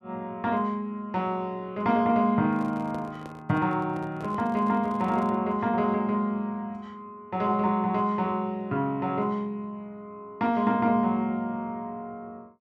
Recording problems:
handling noise; from 2.5 to 5.5 s; peak -10 dB vs average level

